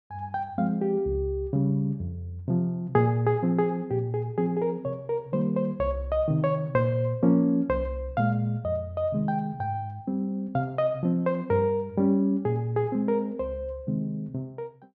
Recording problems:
none

